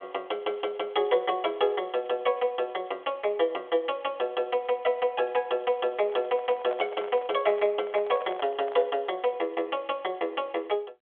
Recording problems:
phone line; 340 Hz to 3.5 kHz, G.726
microphone handling noise; from 6 to 9 s; peak -5 dB vs average level

